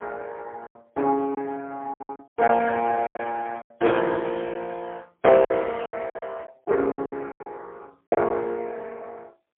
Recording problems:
phone line; 320 Hz to 3.3 kHz, AMR-NB, then MP3
lost packets; 12% of the sound replaced, filled with silence

